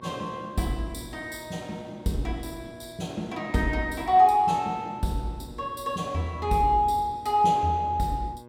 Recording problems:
mains hum; 60 Hz, harmonics up to 1.7 kHz, SNR 22 dB

